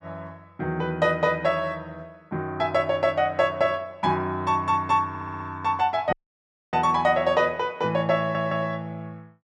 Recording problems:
audio stuttering; at 5 s and at 8 s
audio cutting out; at 6 s for 0.5 s

